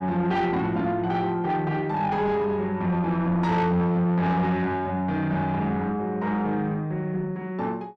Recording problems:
distorted audio; soft clipping, signal-to-distortion ratio 10 dB

